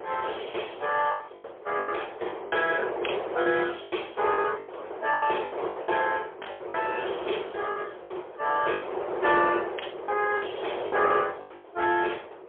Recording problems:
phone line; 320 Hz to 3.4 kHz, AMR-NB, then MP3
wind on the microphone; below 810 Hz, SNR 7 dB
lost packets; 12% of the sound replaced, filled with the last packet

